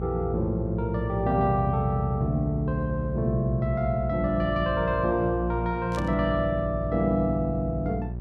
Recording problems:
electrical hum; 60 Hz, harmonics up to 600 Hz, SNR 7 dB
static burst; at 6 s; peak -12 dB vs average level

